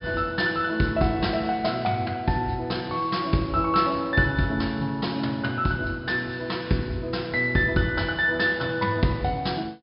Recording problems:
treble missing; nothing above 5.5 kHz

